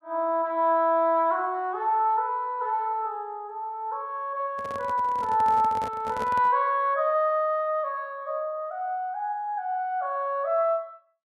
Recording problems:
microphone handling noise; from 4.5 to 6.5 s; peak -6 dB vs average level

